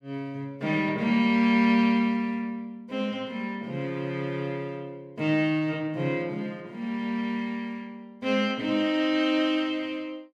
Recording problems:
none

